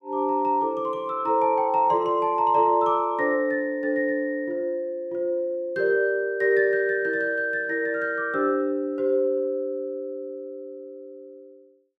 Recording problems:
none

